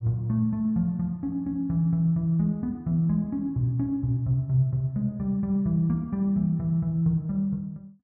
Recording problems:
none

